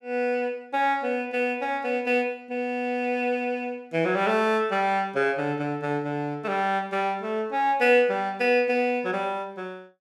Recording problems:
none

